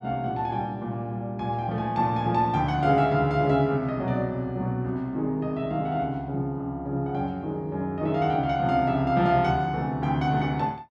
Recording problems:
none

